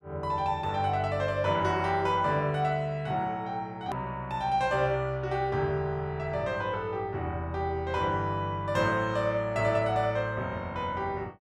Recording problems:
click at an edit; at 4 s

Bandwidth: 12.5 kHz